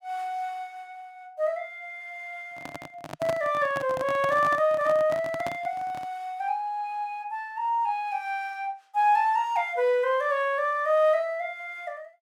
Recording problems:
handling noise; from 2.5 to 6 s; peak -2 dB vs average level

